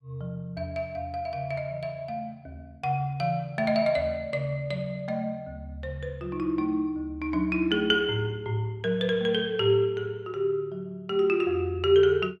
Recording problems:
none

